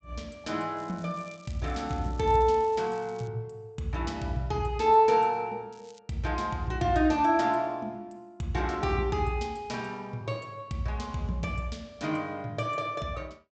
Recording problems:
treble missing; nothing above 8 kHz
crackle; from 1 to 3.5 s and at 5.5 s; loose cable, SNR 27 dB

